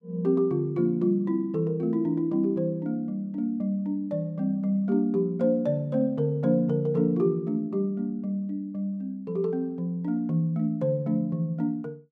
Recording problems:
none

